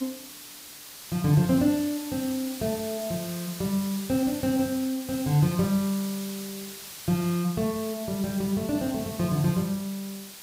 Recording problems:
hiss; slope +1 dB per octave, SNR 12 dB

